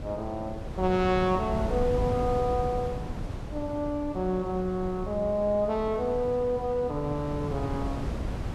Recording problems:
wind noise; below 260 Hz, SNR 7 dB

